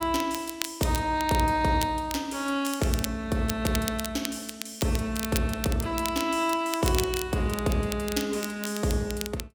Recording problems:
crackle; vinyl, SNR 9 dB

